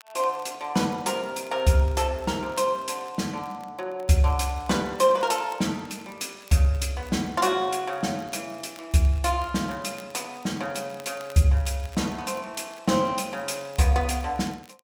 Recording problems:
crackle; vinyl, SNR 27 dB

